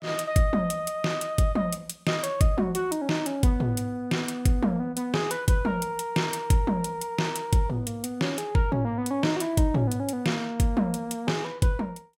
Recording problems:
none

